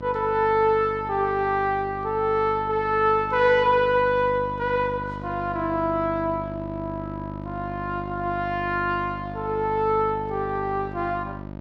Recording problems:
hum; 50 Hz, harmonics up to 1.3 kHz, SNR 12 dB

